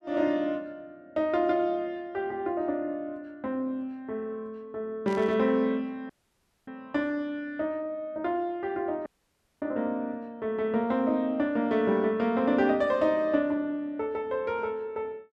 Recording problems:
static burst; at 5 s; peak -13 dB vs average level
dropout; at 6 s for 0.5 s and at 9 s for 0.5 s

